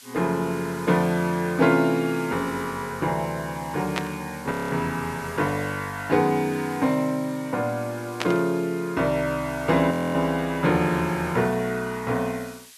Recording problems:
hiss; slope +4 dB per octave, SNR 20 dB
burst of static; at 4 s and at 8 s; peak +2 dB vs average level
audio freezing; at 4.5 s and at 10 s

